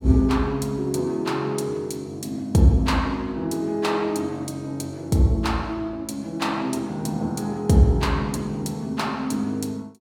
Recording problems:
none

